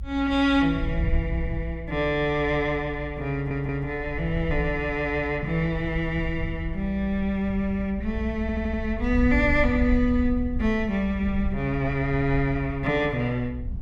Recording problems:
low-frequency rumble; below 76 Hz, SNR 8 dB
stutter; at 3.5 s and at 8.5 s

